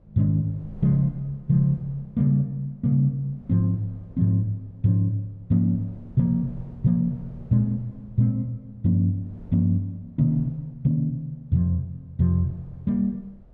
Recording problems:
wind on the microphone; below 130 Hz, SNR 24 dB

